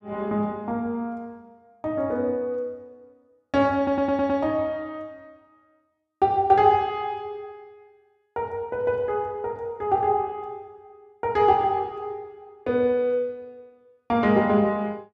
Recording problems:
stutter; at 4 s

